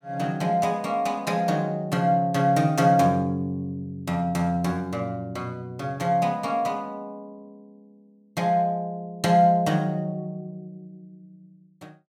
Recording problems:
none

